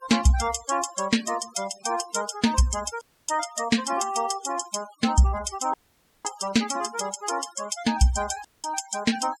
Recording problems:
denoising artefacts; signal-to-artefact ratio 15 dB
audio cutting out; at 3 s, at 5.5 s for 0.5 s and at 8.5 s

